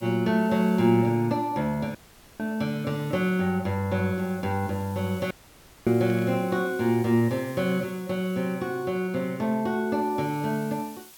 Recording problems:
background hiss; slope +1 dB per octave, SNR 23 dB
dropout; at 2 s and at 5.5 s for 0.5 s
burst of static; at 6 s; peak -15 dB vs average level

